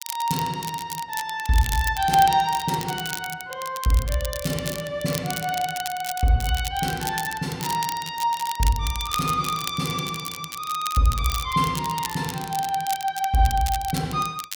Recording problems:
crackle; vinyl, SNR 9 dB

